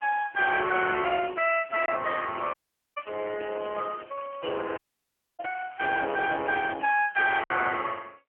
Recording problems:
phone line; 260 Hz to 3.3 kHz, AMR-NB
lost packets; 1.5% of the sound replaced, filled with silence
crackle; from 1.5 to 5.5 s and from 5.5 to 6.5 s; loose cable, SNR 28 dB
dropout; at 2.5 s and at 5 s for 0.5 s

